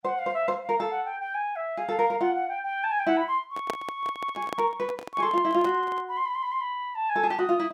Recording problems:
microphone handling noise; from 3.5 to 6 s; peak 0 dB vs average level

